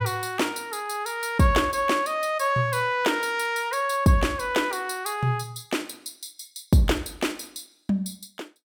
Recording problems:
none

